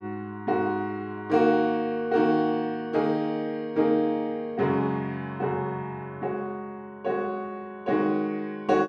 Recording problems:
none

